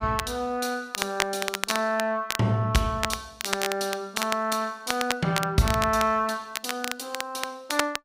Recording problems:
crackling; vinyl, SNR 5 dB

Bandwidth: 15.5 kHz